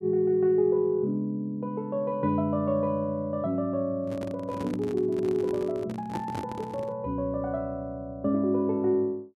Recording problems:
handling noise; from 4 to 7 s; peak -3 dB vs average level

